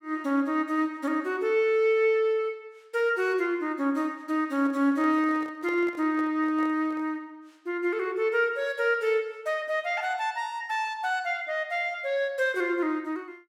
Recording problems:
microphone handling noise; from 4.5 to 7 s; peak -11 dB vs average level

